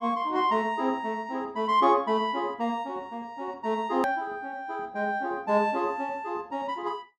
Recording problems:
hard cut with a click; at 4 s

